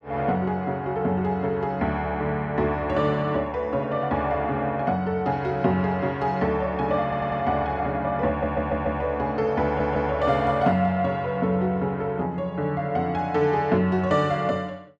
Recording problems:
stutter; at 7 s, at 8.5 s and at 9.5 s

